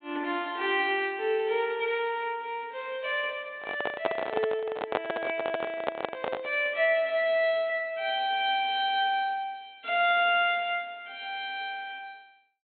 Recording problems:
low-pass filter; nothing above 4 kHz
microphone handling noise; from 3.5 to 6.5 s; peak +4 dB vs average level

